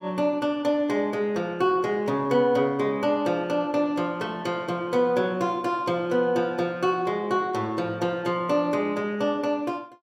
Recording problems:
none

